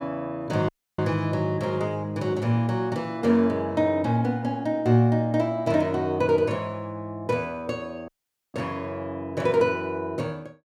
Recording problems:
dropout; at 0.5 s and at 8 s

